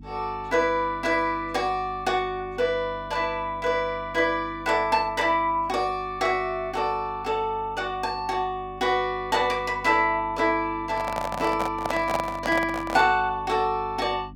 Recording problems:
hum; 50 Hz, harmonics up to 300 Hz, SNR 19 dB
handling noise; from 11 to 13 s; peak +2 dB vs average level

